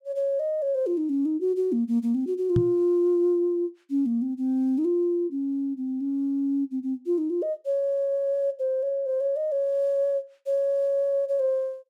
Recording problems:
microphone bump; at 2.5 s; peak +5 dB vs average level

